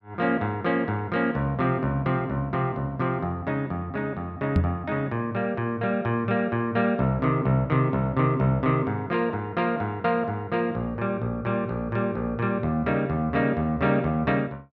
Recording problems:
microphone thump; at 4.5 s; peak +7 dB vs average level

